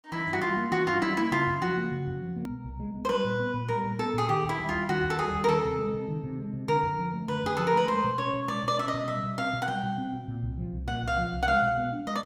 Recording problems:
click at an edit; at 2.5 s

